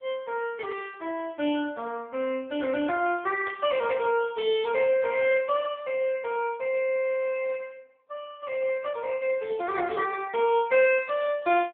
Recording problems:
telephone audio; 260 Hz to 3.5 kHz, AMR-NB
burst of static; at 3.5 s; peak -10 dB vs average level

